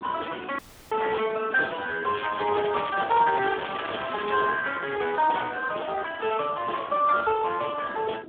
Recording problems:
phone line; 240 Hz to 2.9 kHz, Speex
wind noise; below 440 Hz, SNR 17 dB
dropout; at 0.5 s
crackle; from 2 to 4.5 s; loose cable, SNR 15 dB

